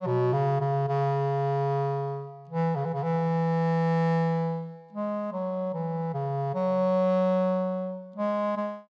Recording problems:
none

